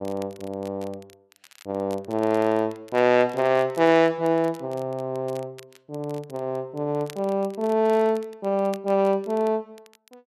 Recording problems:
crackle; vinyl, SNR 26 dB

